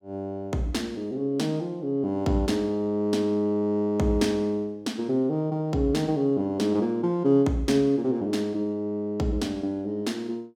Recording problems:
none

